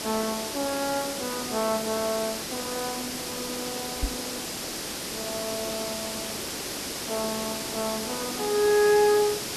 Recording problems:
hiss; SNR 3 dB
microphone bump; at 4 s; peak +1 dB vs average level

